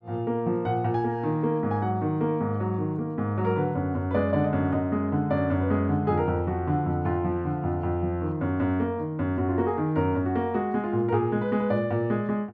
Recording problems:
none

